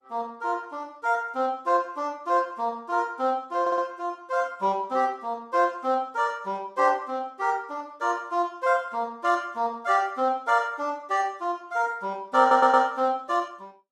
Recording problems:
codec artefacts; Opus, log-spectral distance 2 dB
audio stuttering; at 3.5 s and at 12 s

